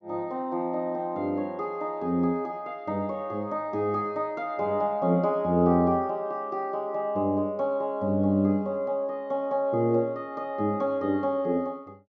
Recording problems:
treble missing; nothing above 8 kHz

